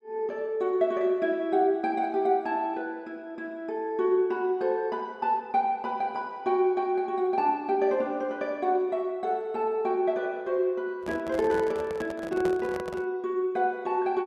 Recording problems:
microphone handling noise; from 11 to 13 s; peak -4 dB vs average level

